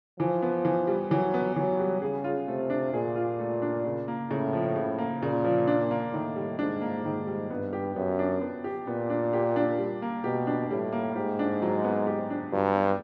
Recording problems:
none

